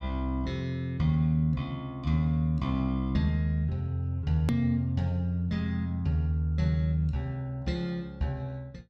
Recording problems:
click at an edit; at 4.5 s

